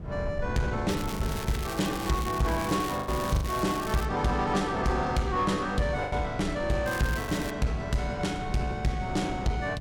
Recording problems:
distortion; soft clipping, signal-to-distortion ratio 12 dB
wind noise; below 150 Hz, SNR 12 dB
lost packets; 3% of the sound replaced, filled with the last packet
crackling; from 1 to 4 s and at 7 s; loose cable, SNR 11 dB

